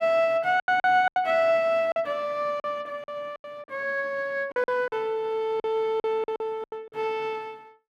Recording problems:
packet loss; 11% of the sound replaced, filled with silence

